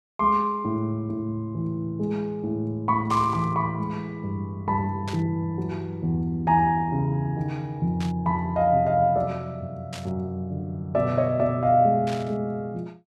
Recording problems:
static burst; 5 times, first at 3 s; peak -7 dB vs average level

